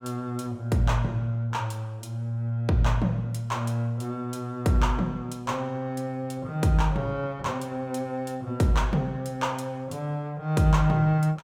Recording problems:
none

